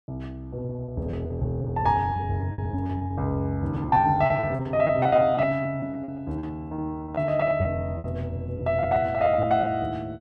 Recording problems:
packet loss; 15% of the sound replaced, filled with repeated pitch periods

